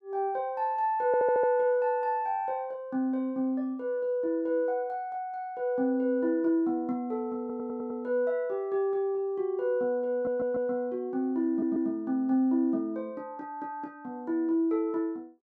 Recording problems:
audio stuttering; 4 times, first at 1 s

